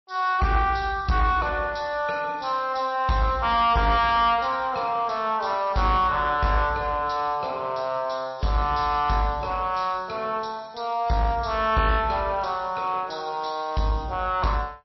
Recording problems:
lossy compression; MP3, log-spectral distance 3 dB, nothing above 5.7 kHz
distortion; soft clipping, signal-to-distortion ratio 10 dB

